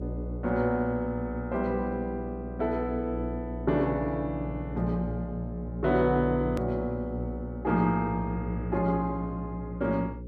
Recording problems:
hum; 60 Hz, harmonics up to 540 Hz, SNR 8 dB
click at an edit; at 6.5 s

